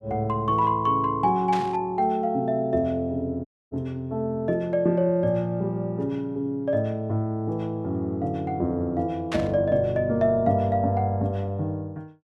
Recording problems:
burst of static; at 1.5 s and at 9.5 s; peak -4 dB vs average level
audio cutting out; at 3.5 s

